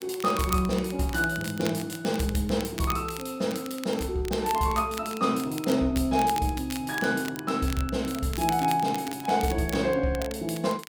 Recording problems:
crackle; vinyl, SNR 13 dB

